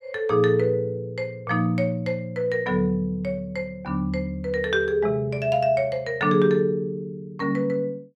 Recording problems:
none

